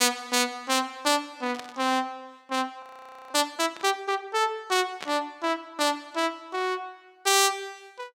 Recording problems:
static burst; at 1.5 s, at 4 s and at 5 s; peak -5 dB vs average level
audio freezing; at 3 s

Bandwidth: 16.5 kHz